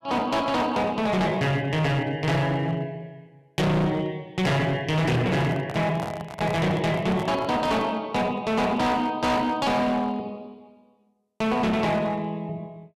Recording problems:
distorted audio; hard clipping, signal-to-distortion ratio 6 dB
handling noise; from 5 to 8 s; peak -3 dB vs average level

